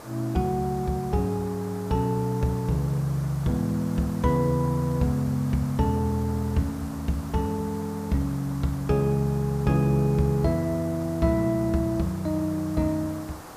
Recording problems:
hiss; SNR 16 dB

